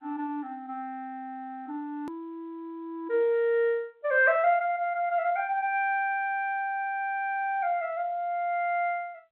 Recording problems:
telephone audio; 260 Hz to 3.5 kHz, G.711
click at an edit; at 2 s

